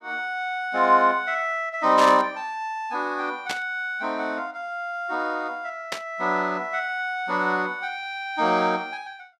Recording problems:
static burst; at 2 s, at 3.5 s and at 6 s; peak -1 dB vs average level

